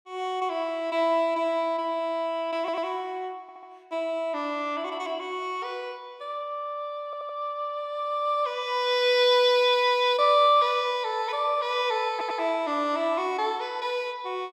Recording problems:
audio stuttering; 4 times, first at 2.5 s

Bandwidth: 15 kHz